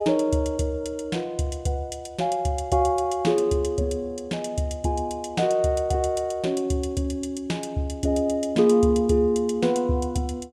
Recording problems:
none

